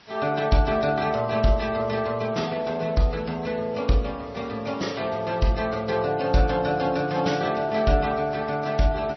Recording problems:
lossy compression; Vorbis, then MP3, log-spectral distance 4 dB, nothing above 5.8 kHz
hiss; slope -1 dB per octave, SNR 26 dB

